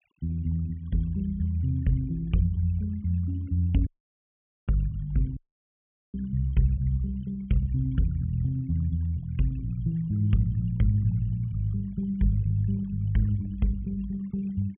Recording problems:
low-pass filter; nothing above 3.3 kHz
noise reduction artefacts; signal-to-artefact ratio 27 dB
dropout; at 4 s for 1 s and at 5.5 s for 1 s

